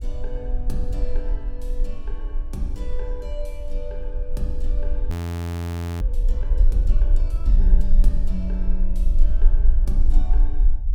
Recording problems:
low-frequency rumble; below 42 Hz, strongest tone 22 Hz, SNR -11 dB
audio freezing; at 5 s for 1 s

